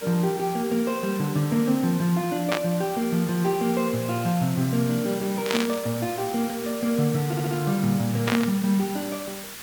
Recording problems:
hiss; SNR 12 dB
static burst; at 2.5 s, at 5.5 s and at 8.5 s; peak +3 dB vs average level
audio stuttering; at 7.5 s

